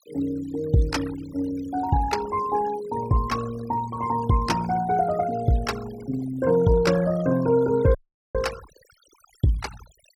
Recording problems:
denoising artefacts; signal-to-artefact ratio 17 dB
dropout; at 8 s

